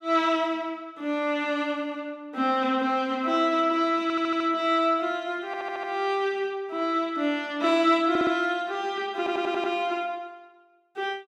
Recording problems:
stutter; 4 times, first at 4 s

